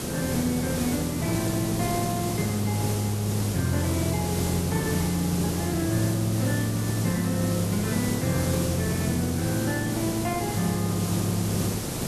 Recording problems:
background hiss; SNR 3 dB

